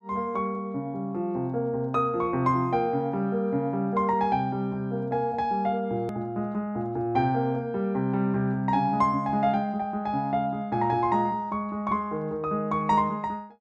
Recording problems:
click at an edit; at 6 s

